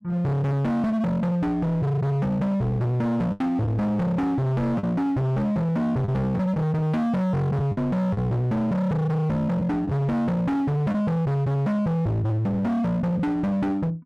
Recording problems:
distortion; hard clipping, signal-to-distortion ratio 6 dB
packet loss; 3% of the sound replaced, filled with the last packet

